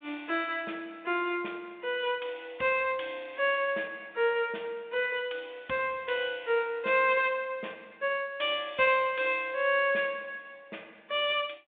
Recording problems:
telephone audio; 280 Hz to 3.6 kHz, G.726

